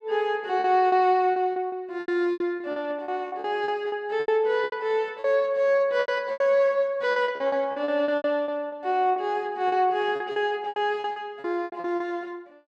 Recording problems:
packet loss; 16% of the sound replaced, filled with repeated pitch periods

